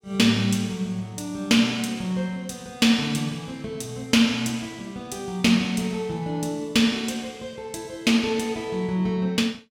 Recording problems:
none

